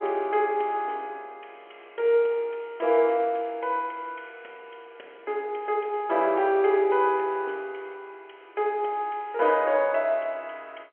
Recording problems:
telephone audio; 300 Hz to 3.2 kHz, G.711

